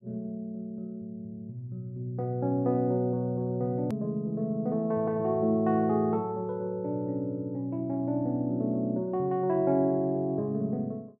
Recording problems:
edit click; at 4 s

